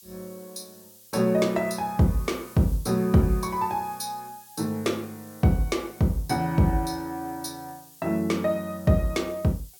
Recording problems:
background hiss; SNR 22 dB

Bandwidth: 17 kHz